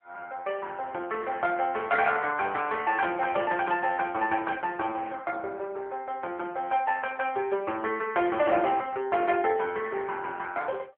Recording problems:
phone line; 320 Hz to 3.3 kHz, AMR-NB

